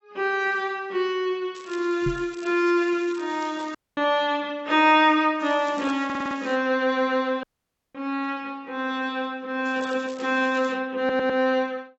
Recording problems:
codec artefacts; AAC, log-spectral distance 3 dB, nothing above 7.3 kHz
crackle; from 1.5 to 4 s, from 5.5 to 6.5 s and from 9.5 to 11 s; loose cable, SNR 22 dB
knock on the microphone; at 2 s; peak -3 dB vs average level
dropout; at 4 s and at 7.5 s for 0.5 s
stutter; at 6 s and at 11 s

